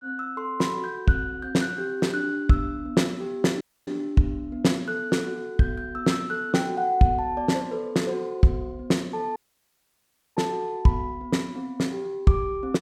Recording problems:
dropout; at 3.5 s and at 9.5 s for 1 s

